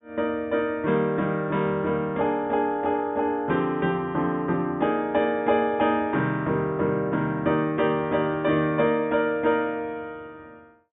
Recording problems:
treble missing; nothing above 4 kHz

